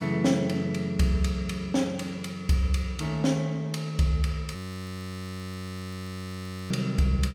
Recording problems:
frozen audio; at 4.5 s for 2 s

